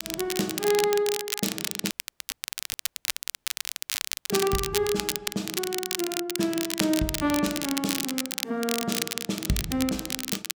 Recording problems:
crackle; vinyl, SNR 2 dB
audio cutting out; at 2 s for 2.5 s

